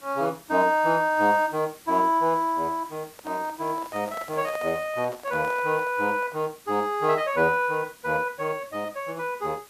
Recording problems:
hiss; slope -1 dB per octave, SNR 23 dB
microphone handling noise; from 3 to 6.5 s; peak -8 dB vs average level

